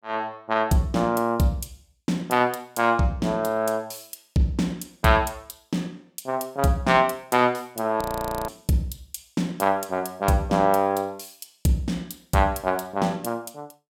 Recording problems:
frozen audio; at 8 s

